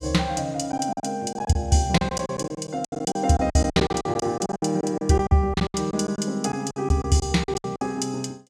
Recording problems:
lost packets; 16% of the sound replaced, filled with silence

